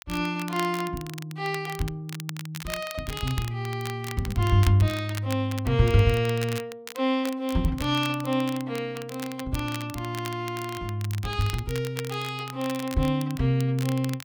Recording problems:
crackle; vinyl, SNR 14 dB

